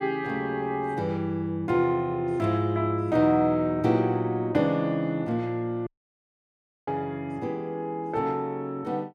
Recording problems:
dropout; at 6 s for 1 s

